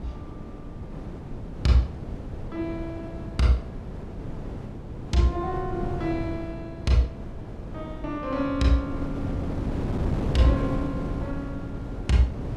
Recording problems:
wind noise; below 300 Hz, SNR 6 dB

